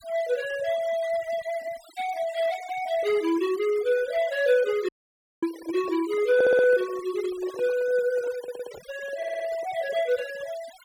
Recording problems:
noise reduction artefacts; signal-to-artefact ratio 18 dB
dropout; at 5 s for 0.5 s
handling noise; from 5.5 to 10 s; peak -10 dB vs average level
stutter; at 6.5 s, at 8.5 s and at 9 s

